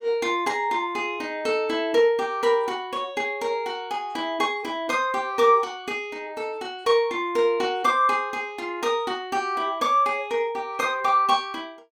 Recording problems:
none

